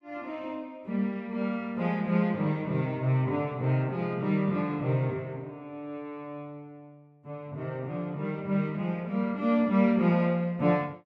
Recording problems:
none

